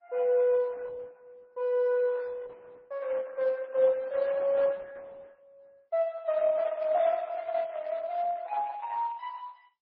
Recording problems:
lossy codec; Opus, then MP3, log-spectral distance 3 dB, nothing above 4.9 kHz

